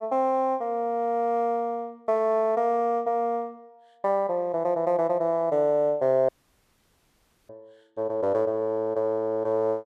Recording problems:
dropout; at 6.5 s for 1 s

